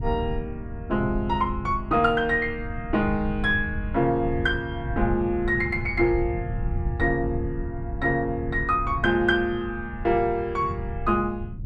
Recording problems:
wind on the microphone; below 110 Hz, SNR 8 dB

